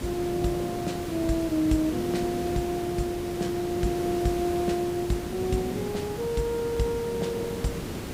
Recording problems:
background hiss; slope -6 dB per octave, SNR 6 dB

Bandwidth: 15.5 kHz